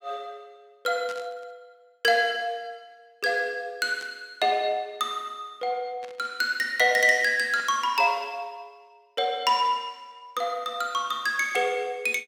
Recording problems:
burst of static; 4 times, first at 1 s; peak -12 dB vs average level

